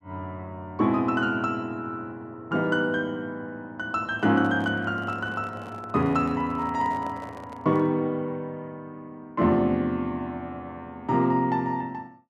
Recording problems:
handling noise; from 4 to 8 s; peak -11 dB vs average level

